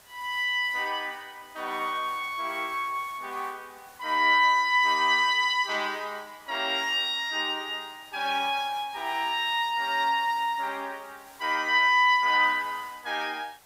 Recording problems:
background hiss; SNR 26 dB

